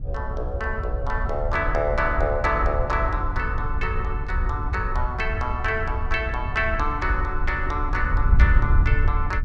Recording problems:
wind noise; below 76 Hz, SNR 1 dB

